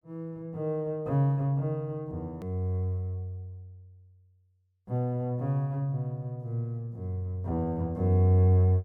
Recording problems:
hard cut with a click; at 2.5 s

